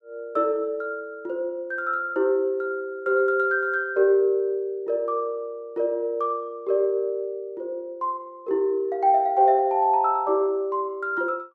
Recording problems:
none

